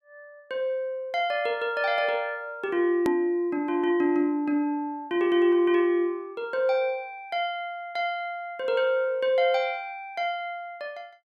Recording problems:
edit click; at 3 s

